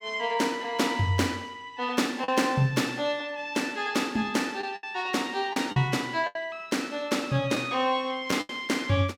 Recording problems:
lost packets; 4% of the sound replaced, filled with the last packet

